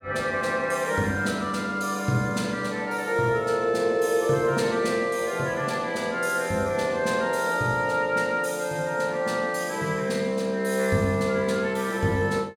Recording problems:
none

